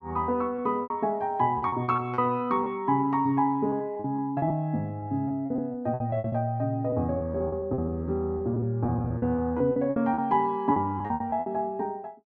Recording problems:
packet loss; 14% of the sound replaced, filled with repeated pitch periods

